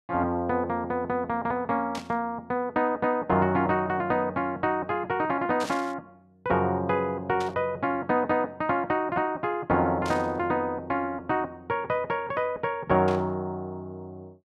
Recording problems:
burst of static; 5 times, first at 2 s; peak -7 dB vs average level

